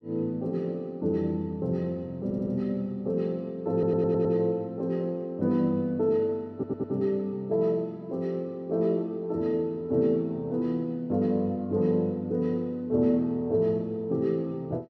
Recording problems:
audio stuttering; at 2 s, at 3.5 s and at 6.5 s

